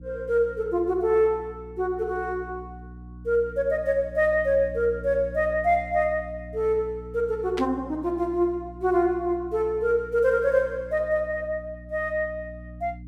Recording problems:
mains hum; 60 Hz, harmonics up to 300 Hz, SNR 17 dB
static burst; at 7.5 s; peak -5 dB vs average level

